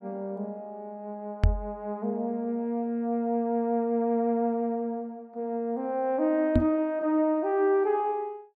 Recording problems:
knock on the microphone; at 1.5 s and at 6.5 s; peak +8 dB vs average level

